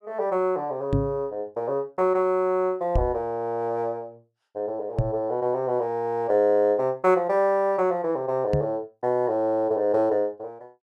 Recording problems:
knock on the microphone; 4 times, first at 1 s; peak +4 dB vs average level

